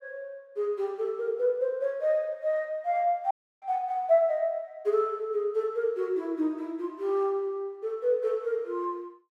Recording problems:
audio cutting out; at 3.5 s

